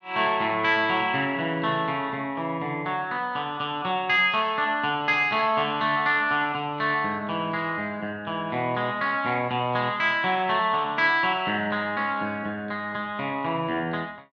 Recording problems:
none

